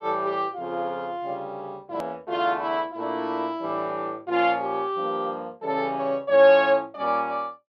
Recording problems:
edit click; at 2 s

